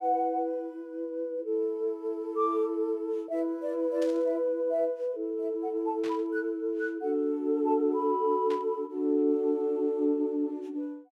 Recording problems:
static burst; at 4 s, at 6 s and at 8.5 s; peak -11 dB vs average level

